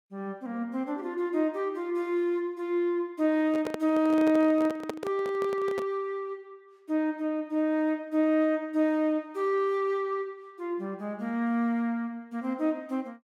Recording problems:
handling noise; from 3.5 to 6 s; peak -1 dB vs average level

